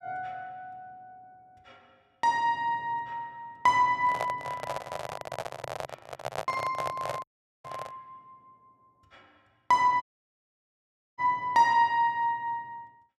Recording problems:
handling noise; from 4 to 8 s; peak -1 dB vs average level
audio cutting out; at 7 s and at 10 s for 1 s

